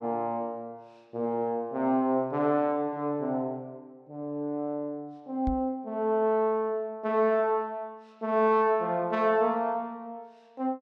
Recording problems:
microphone bump; at 5.5 s; peak -2 dB vs average level

